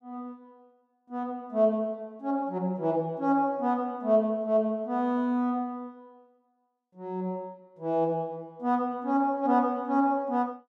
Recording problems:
none

